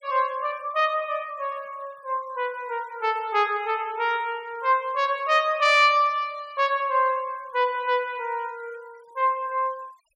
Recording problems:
denoising artefacts; signal-to-artefact ratio 28 dB

